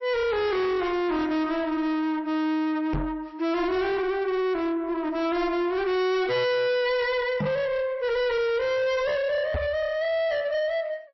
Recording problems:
lossy compression; MP3, log-spectral distance 2 dB, nothing above 5.7 kHz
distortion; soft clipping, signal-to-distortion ratio 7 dB
knock on the microphone; at 3 s, at 7.5 s and at 9.5 s; peak 0 dB vs average level

